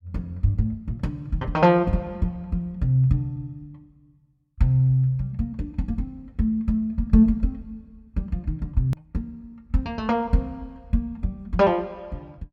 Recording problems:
click at an edit; at 9 s

